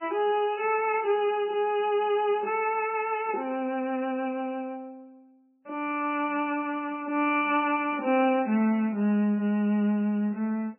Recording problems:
lossy codec; MP3, log-spectral distance 2 dB, nothing above 2.7 kHz

